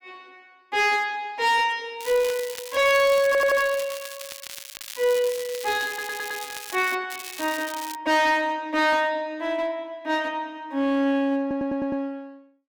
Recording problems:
distorted audio; hard clipping, uneven, signal-to-distortion ratio 10 dB
crackle; from 2 to 7 s and at 7 s; loose cable, SNR 12 dB
audio stuttering; at 3.5 s, at 6 s and at 11 s

